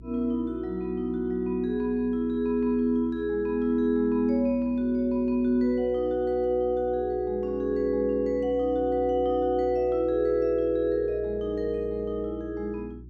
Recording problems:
mains hum; 60 Hz, harmonics up to 360 Hz, SNR 18 dB

